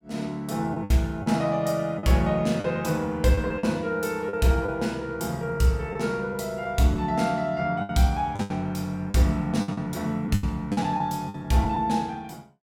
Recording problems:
lost packets; 7% of the sound replaced, filled with the last packet

